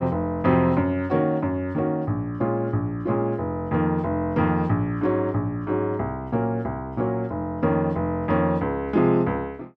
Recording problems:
none

